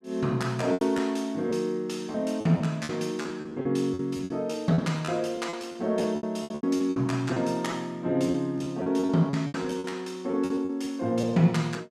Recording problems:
packet loss; 13% of the sound replaced, filled with repeated pitch periods

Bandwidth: 14 kHz